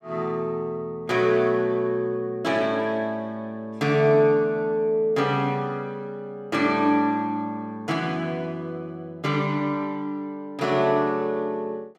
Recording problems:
none

